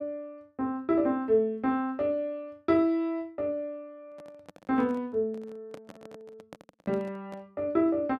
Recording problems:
microphone handling noise; from 4 to 7.5 s; peak -11 dB vs average level

